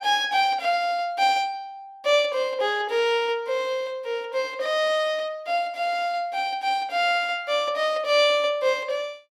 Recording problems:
none

